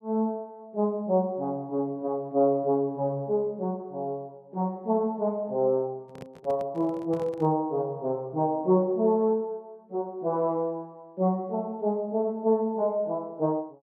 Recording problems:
handling noise; from 6 to 7.5 s; peak -11 dB vs average level

